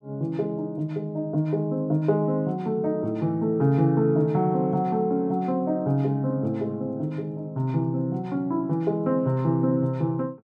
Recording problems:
none

